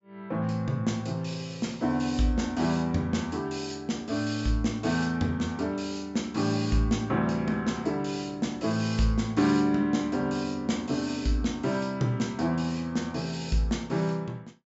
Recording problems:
treble cut off; nothing above 8 kHz

